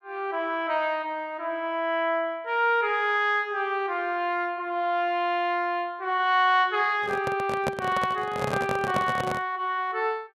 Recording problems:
handling noise; from 7 to 9.5 s; peak +1 dB vs average level

